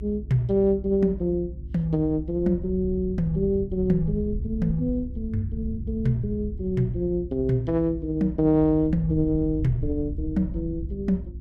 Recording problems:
hum; 50 Hz, harmonics up to 350 Hz, SNR 17 dB
low-frequency rumble; below 84 Hz, SNR 10 dB

